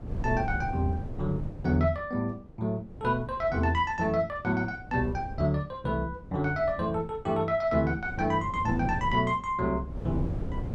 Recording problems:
wind on the microphone; below 190 Hz, SNR 10 dB

